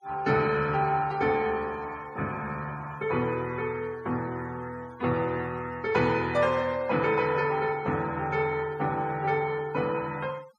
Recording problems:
noise reduction artefacts; signal-to-artefact ratio 24 dB

